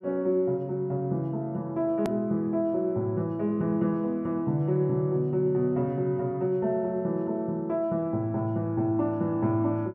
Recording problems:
hard cut with a click; at 2 s

